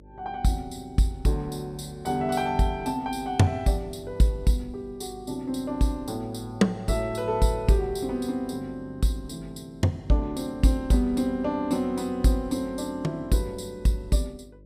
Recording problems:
hum; 50 Hz, harmonics up to 600 Hz, SNR 24 dB

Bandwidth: 15.5 kHz